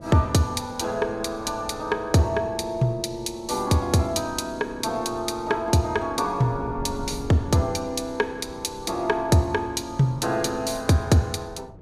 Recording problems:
wind noise; below 260 Hz, SNR 18 dB

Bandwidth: 15 kHz